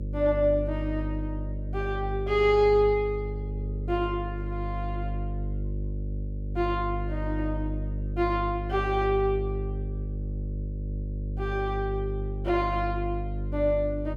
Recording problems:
mains hum; 50 Hz, harmonics up to 550 Hz, SNR 5 dB

